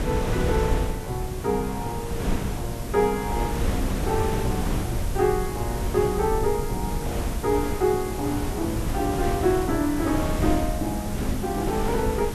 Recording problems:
background hiss; slope +1 dB per octave, SNR 14 dB
rumble; below 110 Hz, SNR 10 dB
wind noise; below 330 Hz, SNR 3 dB

